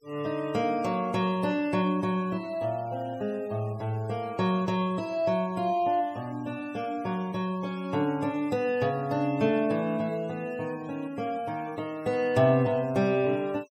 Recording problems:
denoising artefacts; signal-to-artefact ratio 24 dB

